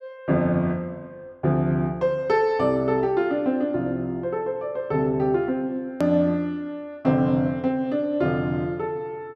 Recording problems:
click at an edit; at 6 s

